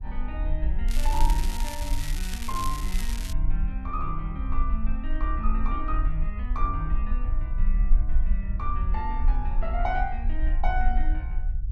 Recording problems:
low-frequency rumble; below 44 Hz, strongest tone 20 Hz, SNR -5 dB
crackling; from 1 to 3.5 s; loose cable, SNR 4 dB

